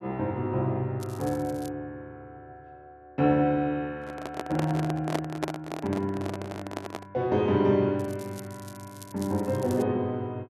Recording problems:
crackle; at 1 s and from 8 to 10 s; loose cable, SNR 20 dB
handling noise; from 4 to 7 s; peak +3 dB vs average level

